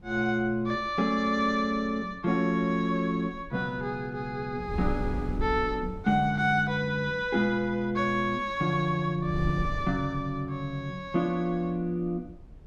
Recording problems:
wind noise; below 110 Hz, SNR 13 dB

